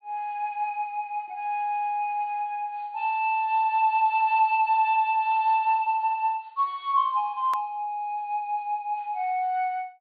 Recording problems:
low-pass filter; nothing above 4.6 kHz
click at an edit; at 7.5 s

